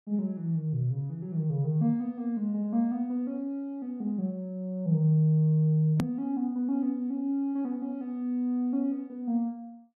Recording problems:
edit click; at 6 s

